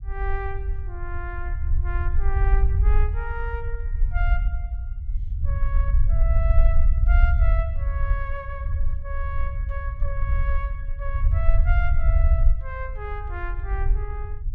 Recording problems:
low-frequency rumble; below 62 Hz, SNR -10 dB

